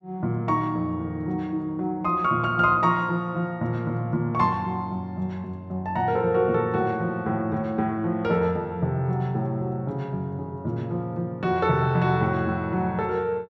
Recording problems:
none

